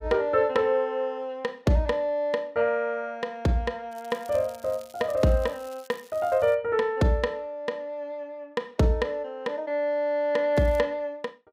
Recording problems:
crackle; from 4 to 6.5 s and at 11 s; loose cable, SNR 25 dB

